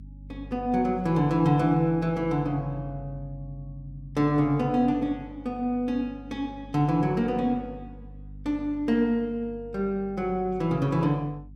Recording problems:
hum; 50 Hz, harmonics up to 300 Hz, SNR 18 dB

